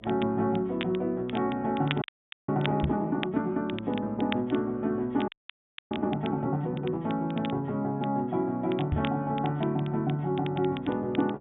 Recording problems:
treble cut off; nothing above 3.7 kHz
hum; 60 Hz, harmonics up to 720 Hz, SNR 28 dB
crackling; vinyl, SNR 15 dB
frozen audio; at 2 s and at 5.5 s for 0.5 s
microphone thump; at 3 s and at 9 s; peak +4 dB vs average level

